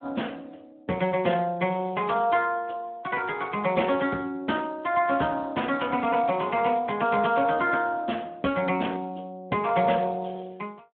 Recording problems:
telephone audio; 150 Hz to 3.5 kHz, Speex

